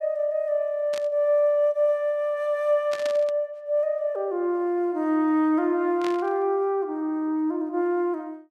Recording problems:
burst of static; at 1 s, at 3 s and at 6 s; peak -8 dB vs average level

